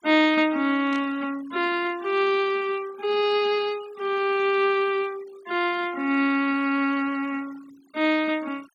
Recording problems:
noise reduction artefacts; signal-to-artefact ratio 23 dB
static burst; at 1 s; peak -14 dB vs average level

